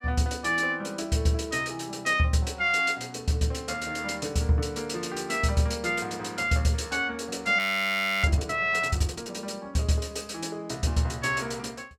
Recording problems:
audio freezing; at 7.5 s for 0.5 s

